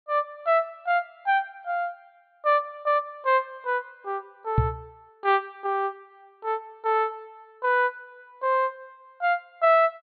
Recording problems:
treble cut off; nothing above 4.5 kHz
microphone thump; at 4.5 s; peak +7 dB vs average level

